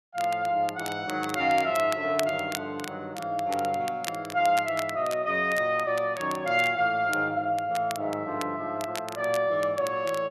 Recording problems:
crackle; vinyl, SNR 14 dB

